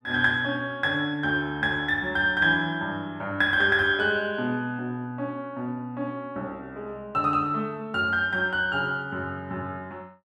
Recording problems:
none

